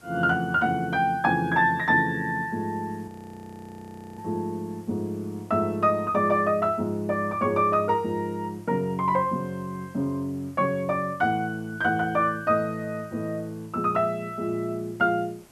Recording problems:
hiss; slope -4 dB per octave, SNR 29 dB
frozen audio; at 3 s for 1 s

